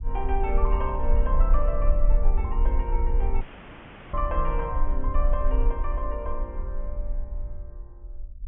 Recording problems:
treble missing; nothing above 3.3 kHz
low-frequency rumble; below 44 Hz, strongest tone 24 Hz, SNR -4 dB
dropout; at 3.5 s for 0.5 s

